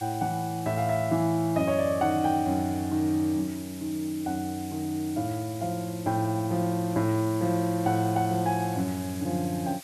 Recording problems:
background hiss; slope +3 dB per octave, SNR 16 dB

